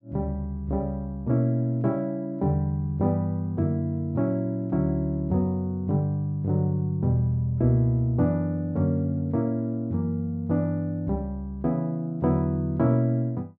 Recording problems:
none

